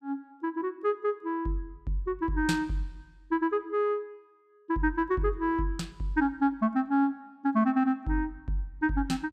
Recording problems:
none

